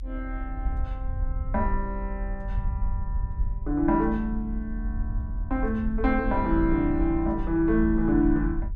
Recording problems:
rumble; below 62 Hz, SNR 6 dB

